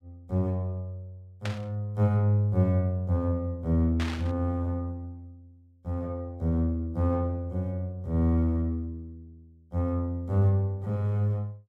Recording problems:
burst of static; at 1.5 s and at 4 s; peak -4 dB vs average level

